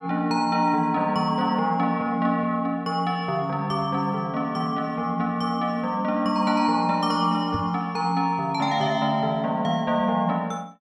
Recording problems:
knock on the microphone; at 7.5 s; peak -2 dB vs average level

